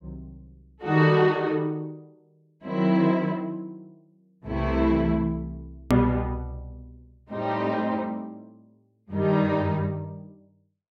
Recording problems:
edit click; at 6 s

